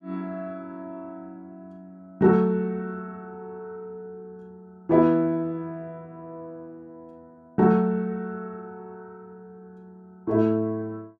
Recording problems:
none

